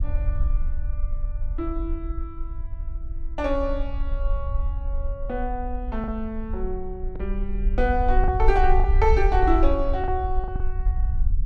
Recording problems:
low-frequency rumble; below 52 Hz, SNR 1 dB
lost packets; 3% of the sound replaced, filled with the last packet

